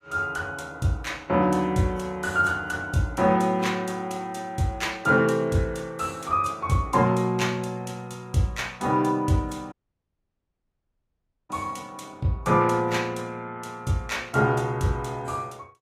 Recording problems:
codec artefacts; AAC, log-spectral distance 2 dB, nothing above 15.1 kHz
dropout; at 9.5 s for 2 s

